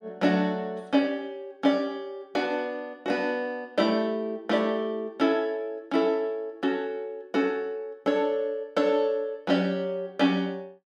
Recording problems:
none

